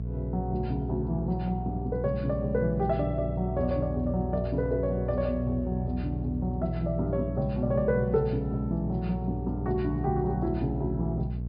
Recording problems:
treble missing; nothing above 5.5 kHz
electrical hum; 60 Hz, harmonics up to 420 Hz, SNR 4 dB

